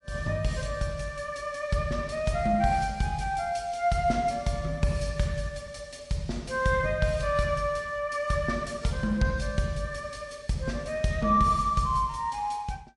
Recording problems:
lossy codec; MP3, log-spectral distance 2 dB, nothing above 11 kHz

